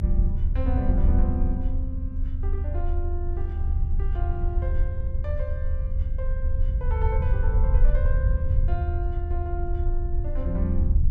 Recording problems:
low-frequency rumble; below 76 Hz, SNR -9 dB
wind on the microphone; below 180 Hz, SNR 15 dB

